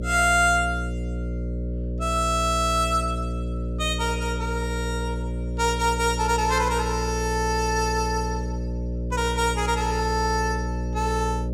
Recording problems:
hum; 60 Hz, harmonics up to 600 Hz, SNR 5 dB

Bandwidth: 16.5 kHz